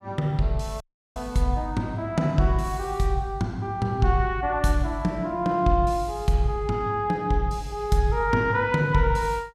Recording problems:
dropout; at 1 s

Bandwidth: 15.5 kHz